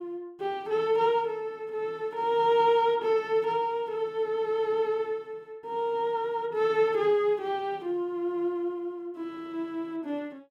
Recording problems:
none

